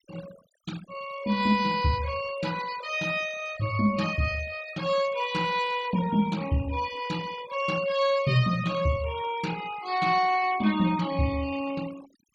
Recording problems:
noise reduction artefacts; signal-to-artefact ratio 16 dB

